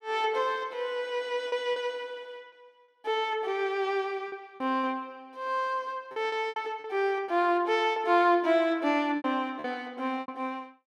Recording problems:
packet loss; 7% of the sound replaced, filled with repeated pitch periods

